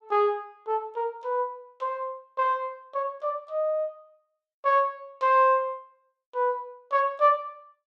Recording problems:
none

